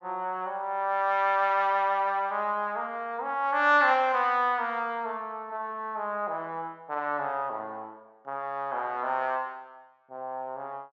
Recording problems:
treble missing; nothing above 7.6 kHz

